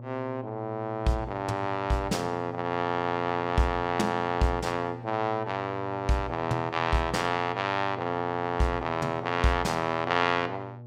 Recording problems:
electrical hum; 60 Hz, harmonics up to 840 Hz, SNR 14 dB

